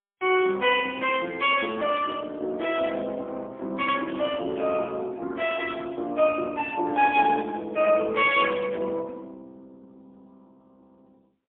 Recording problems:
phone line; 240 Hz to 3.3 kHz, AMR-NB, then MP3
static burst; at 4.5 s; peak -17 dB vs average level

